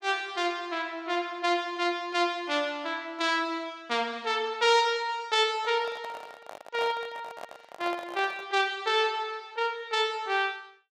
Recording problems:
handling noise; from 5.5 to 8.5 s; peak -7 dB vs average level

